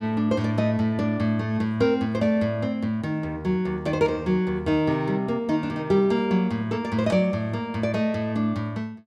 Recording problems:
none

